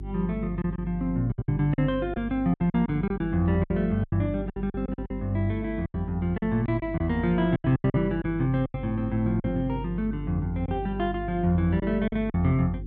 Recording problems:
mains hum; 50 Hz, harmonics up to 400 Hz, SNR 11 dB
lost packets; 11% of the sound replaced, filled with silence

